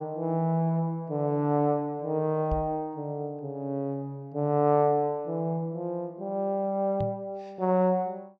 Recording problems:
treble missing; nothing above 8 kHz
microphone thump; at 2.5 s and at 7 s; peak -1 dB vs average level

